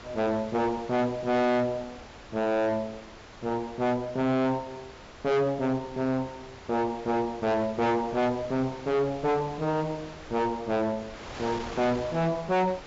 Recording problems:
treble missing; nothing above 7.5 kHz
distortion; hard clipping, uneven, signal-to-distortion ratio 6 dB
wind on the microphone; below 2.5 kHz, SNR 16 dB

